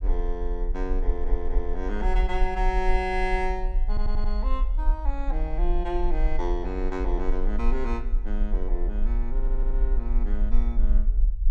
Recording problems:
low-frequency rumble; below 42 Hz, strongest tone 26 Hz, SNR -4 dB
stutter; at 1 s, at 4 s and at 9.5 s

